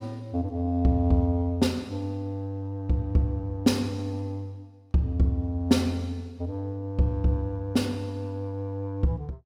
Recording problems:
none

